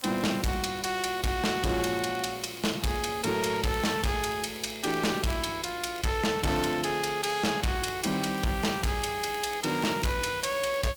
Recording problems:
distorted audio; hard clipping, signal-to-distortion ratio 7 dB
background hiss; SNR 18 dB
crackling; vinyl, SNR 23 dB

